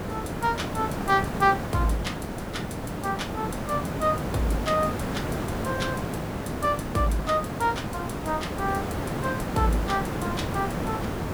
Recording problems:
hiss; slope -8 dB per octave, SNR 2 dB

